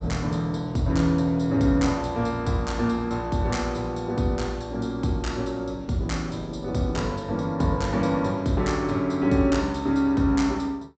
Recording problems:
treble missing; nothing above 8 kHz

